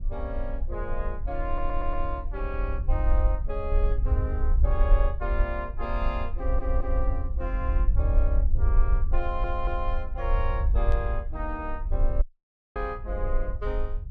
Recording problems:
rumble; below 56 Hz, SNR -5 dB
audio stuttering; at 1.5 s, at 6.5 s and at 9 s
static burst; at 11 s; peak -11 dB vs average level
dropout; at 12 s for 0.5 s

